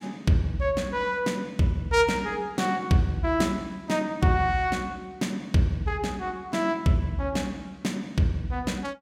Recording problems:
none

